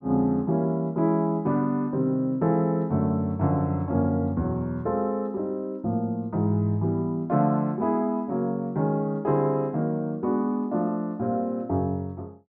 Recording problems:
none

